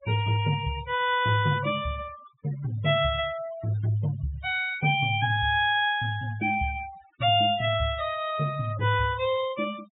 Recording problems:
treble cut off; nothing above 4 kHz
noise reduction artefacts; signal-to-artefact ratio 18 dB

